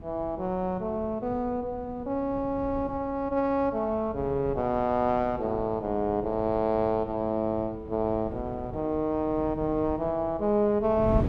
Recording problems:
wind noise; below 220 Hz, SNR 15 dB

